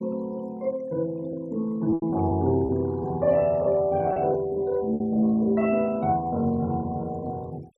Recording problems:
denoising artefacts; signal-to-artefact ratio 26 dB
packet loss; 4% of the sound replaced, filled with repeated pitch periods

